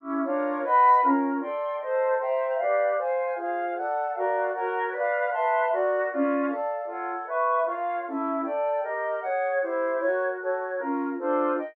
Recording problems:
none

